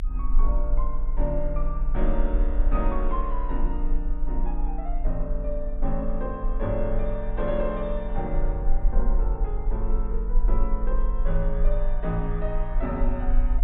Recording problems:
treble missing; nothing above 4 kHz
low-frequency rumble; below 42 Hz, strongest tone 22 Hz, SNR -3 dB

